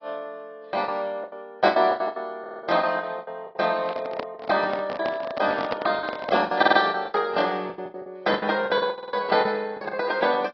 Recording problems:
low-pass filter; nothing above 5.5 kHz
codec artefacts; AAC, log-spectral distance 2 dB
packet loss; 16% of the sound replaced, filled with the last packet
stutter; at 2.5 s, at 6.5 s and at 9 s
handling noise; from 3.5 to 6.5 s; peak +2 dB vs average level

